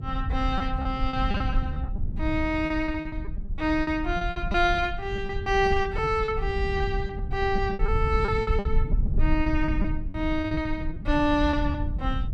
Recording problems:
rumble; below 78 Hz, SNR 4 dB
lost packets; 14% of the sound replaced, filled with repeated pitch periods

